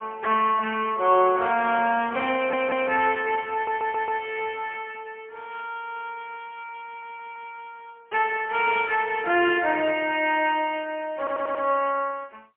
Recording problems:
phone line; 240 Hz to 3.2 kHz, AMR-NB, then MP3
stutter; 4 times, first at 2.5 s

